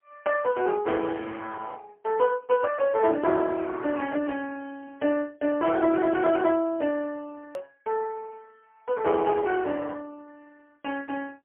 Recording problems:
telephone audio; 240 Hz to 3.1 kHz, AMR-NB, then MP3
click at an edit; at 7.5 s

